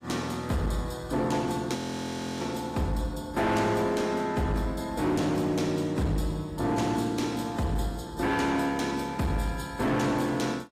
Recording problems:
codec artefacts; AAC, log-spectral distance 3 dB
distorted audio; hard clipping, uneven, signal-to-distortion ratio 10 dB
audio freezing; at 2 s for 0.5 s

